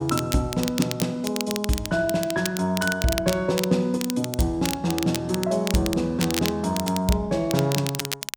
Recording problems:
crackling; vinyl, SNR 7 dB

